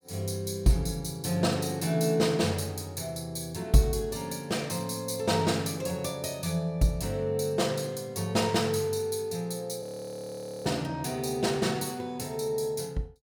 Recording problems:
audio freezing; at 10 s for 1 s

